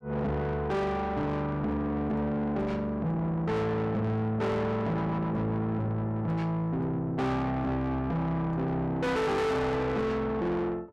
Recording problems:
distortion; soft clipping, signal-to-distortion ratio 7 dB

